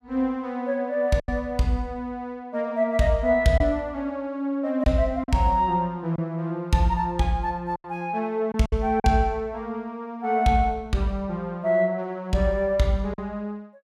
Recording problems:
packet loss; 3% of the sound replaced, filled with silence

